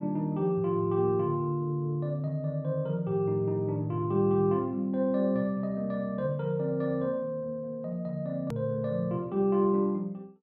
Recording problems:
hard cut with a click; at 8.5 s

